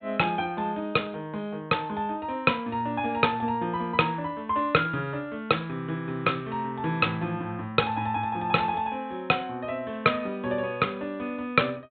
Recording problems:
treble cut off; nothing above 4 kHz

